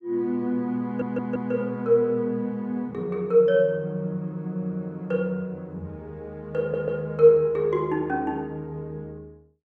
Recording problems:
stutter; at 1 s and at 6.5 s

